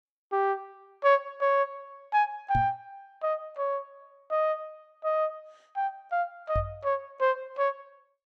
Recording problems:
microphone thump; at 2.5 s and at 6.5 s; peak +1 dB vs average level

